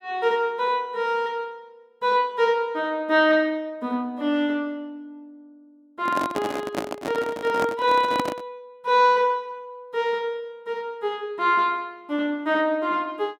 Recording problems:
handling noise; from 6 to 8.5 s; peak +1 dB vs average level

